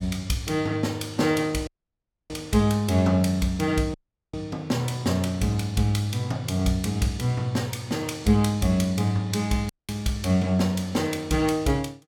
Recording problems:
audio cutting out; at 1.5 s for 0.5 s, at 4 s and at 9.5 s

